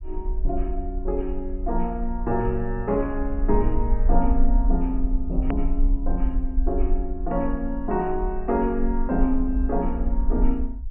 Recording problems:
low-pass filter; nothing above 3 kHz
rumble; below 42 Hz, SNR 2 dB
edit click; at 5.5 s

